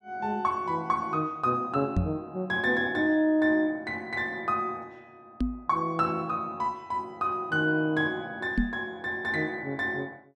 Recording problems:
microphone thump; at 2 s, at 5.5 s and at 8.5 s; peak +5 dB vs average level

